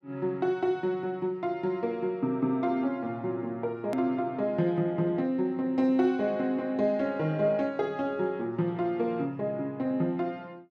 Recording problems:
edit click; at 4 s

